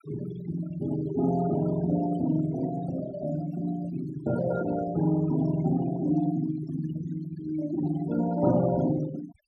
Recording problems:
noise reduction artefacts; signal-to-artefact ratio 14 dB

